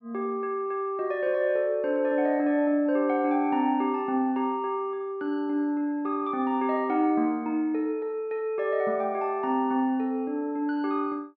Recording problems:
low-pass filter; nothing above 5.5 kHz

